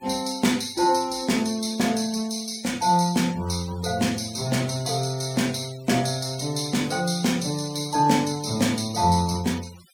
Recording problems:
noise reduction artefacts; signal-to-artefact ratio 18 dB

